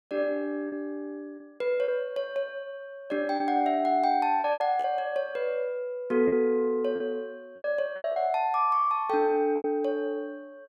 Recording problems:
packet loss; 7% of the sound replaced, filled with repeated pitch periods

